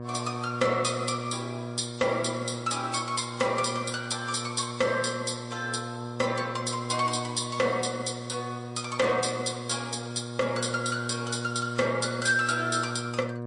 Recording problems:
lossy codec; MP3, log-spectral distance 6 dB
distorted audio; hard clipping, signal-to-distortion ratio 10 dB
electrical hum; 60 Hz, harmonics up to 1.2 kHz, SNR 8 dB

